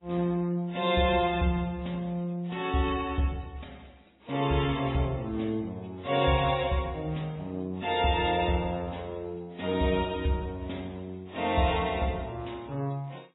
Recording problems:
lossy compression; MP3, then AAC, log-spectral distance 4 dB, nothing above 3.8 kHz

